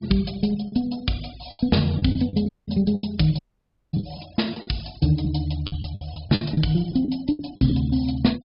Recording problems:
treble cut off; nothing above 5.5 kHz
denoising artefacts; signal-to-artefact ratio 23 dB
packet loss; 11% of the sound replaced, filled with the last packet
audio cutting out; at 2.5 s and at 3.5 s for 0.5 s

